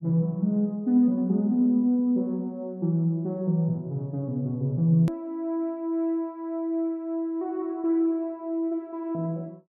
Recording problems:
click at an edit; at 5 s

